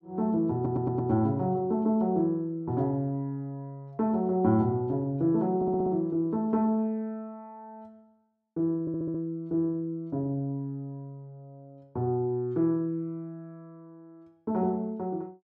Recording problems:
audio stuttering; at 0.5 s, at 5.5 s and at 9 s

